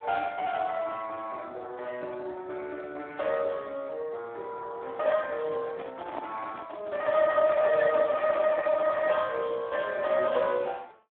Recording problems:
phone line; 280 Hz to 3.1 kHz, Speex
handling noise; from 5.5 to 8.5 s; peak -6 dB vs average level

